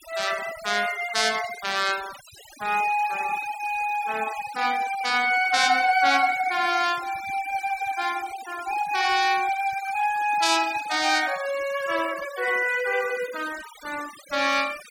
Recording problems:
noise reduction artefacts; signal-to-artefact ratio 15 dB

